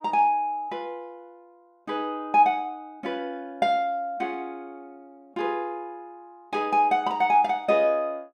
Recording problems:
none

